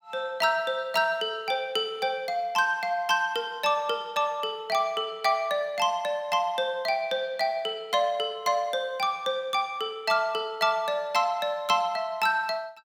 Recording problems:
none

